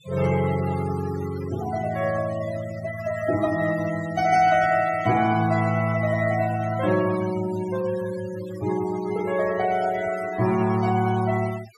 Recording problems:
noise reduction artefacts; signal-to-artefact ratio 15 dB

